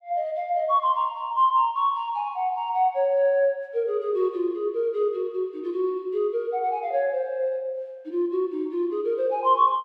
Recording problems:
none

